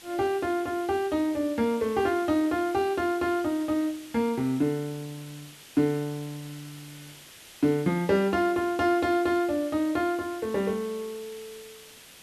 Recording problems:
hiss; slope 0 dB per octave, SNR 20 dB

